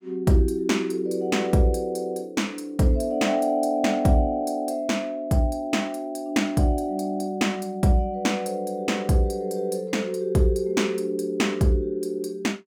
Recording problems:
none

